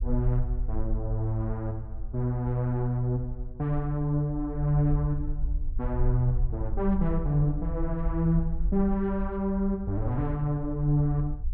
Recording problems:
low-frequency rumble; below 54 Hz, SNR 6 dB

